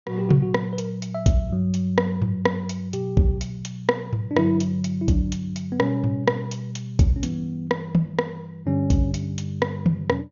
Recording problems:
low-pass filter; nothing above 6.9 kHz

